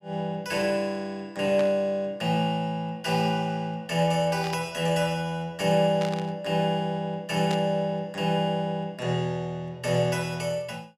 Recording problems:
static burst; 4 times, first at 1.5 s; peak -6 dB vs average level

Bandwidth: 15 kHz